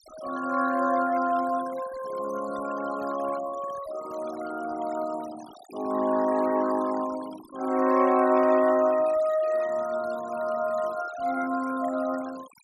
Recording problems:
denoising artefacts; signal-to-artefact ratio 18 dB

